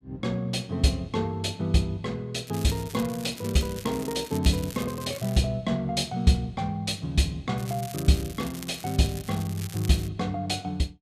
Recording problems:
crackle; from 2.5 to 4.5 s, at 4.5 s and from 7.5 to 10 s; loose cable, SNR 14 dB

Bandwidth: 14.5 kHz